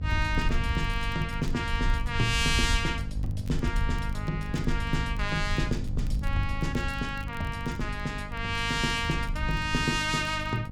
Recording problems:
hum; 50 Hz, harmonics up to 800 Hz, SNR 9 dB
low-frequency rumble; below 72 Hz, SNR 5 dB
crackle; vinyl, SNR 27 dB

